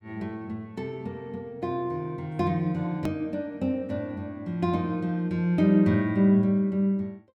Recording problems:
edit click; at 3 s

